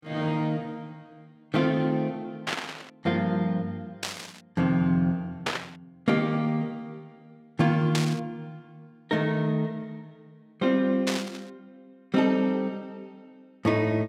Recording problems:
burst of static; 5 times, first at 2.5 s; peak +3 dB vs average level

